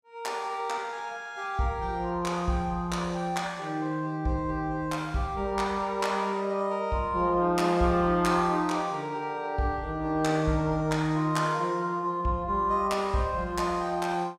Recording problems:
none

